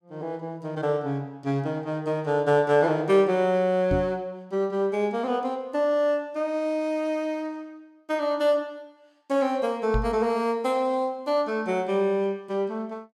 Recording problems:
knock on the microphone; at 4 s and at 10 s; peak +1 dB vs average level

